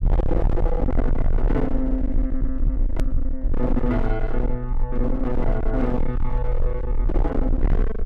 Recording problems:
distorted audio; hard clipping, signal-to-distortion ratio 6 dB
low-frequency rumble; below 46 Hz, strongest tone 20 Hz, SNR -1 dB
click at an edit; at 3 s

